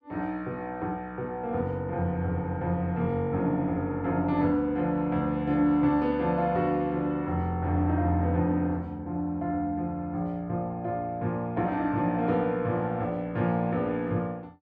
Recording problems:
none

